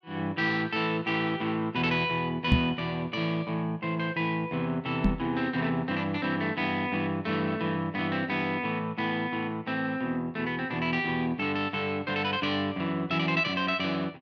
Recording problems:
knock on the microphone; at 2.5 s and at 5 s; peak +9 dB vs average level

